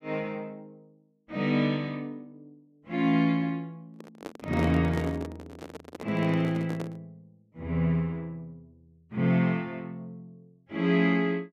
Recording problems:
microphone handling noise; from 4 to 7 s; peak -3 dB vs average level

